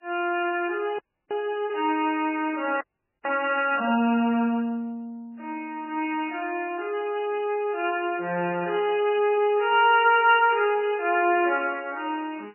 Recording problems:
lossy codec; MP3, log-spectral distance 2 dB, nothing above 2.5 kHz
frozen audio; at 1 s and at 3 s

